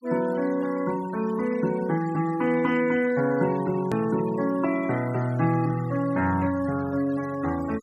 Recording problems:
noise reduction artefacts; signal-to-artefact ratio 18 dB
edit click; at 4 s

